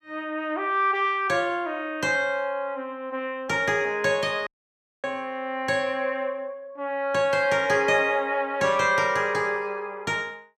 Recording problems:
audio cutting out; at 4.5 s for 0.5 s

